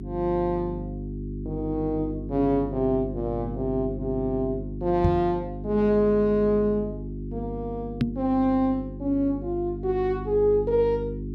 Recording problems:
electrical hum; 50 Hz, harmonics up to 400 Hz, SNR 9 dB
microphone thump; at 5 s and at 8 s; peak +5 dB vs average level

